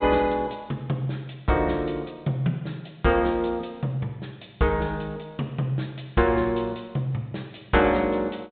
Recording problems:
treble cut off; nothing above 4 kHz

